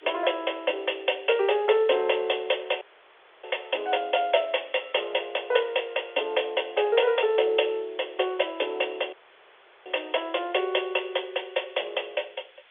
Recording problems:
telephone audio; 340 Hz to 3.5 kHz, G.711
hiss; SNR 28 dB
audio cutting out; at 3 s for 0.5 s and at 9 s for 0.5 s

